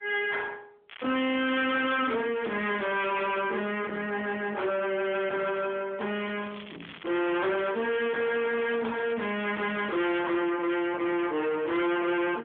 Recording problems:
telephone audio; 170 Hz to 3.5 kHz, AMR-NB
distortion; soft clipping, signal-to-distortion ratio 6 dB
crackle; from 1 to 3 s and from 6 to 10 s; loose cable, SNR 17 dB

